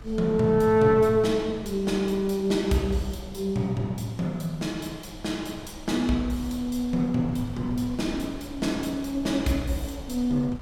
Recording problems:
wind noise; below 110 Hz, SNR 19 dB

